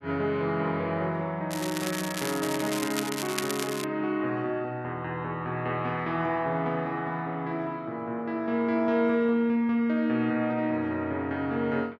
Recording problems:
crackle; from 1.5 to 4 s; loose cable, SNR 7 dB

